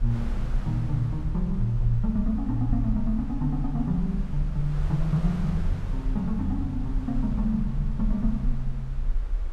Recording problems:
low-frequency rumble; below 42 Hz, strongest tone 34 Hz, SNR 5 dB
wind on the microphone; below 1.1 kHz, SNR 17 dB

